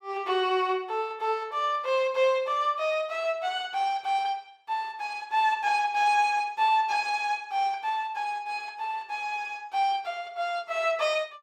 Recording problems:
none

